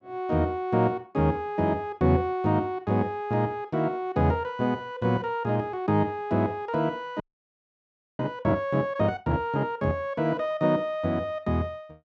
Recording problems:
frozen audio; at 7 s for 1 s

